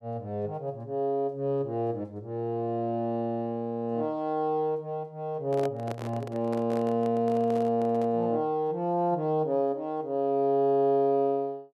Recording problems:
handling noise; from 5.5 to 8 s; peak -5 dB vs average level

